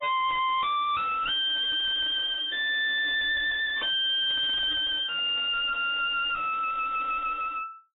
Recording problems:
lossy compression; AAC, log-spectral distance 6 dB, nothing above 3.2 kHz
distortion; soft clipping, signal-to-distortion ratio 4 dB

